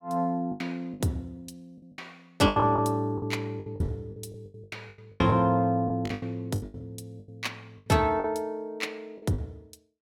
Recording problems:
packet loss; 16% of the sound replaced, filled with the last packet

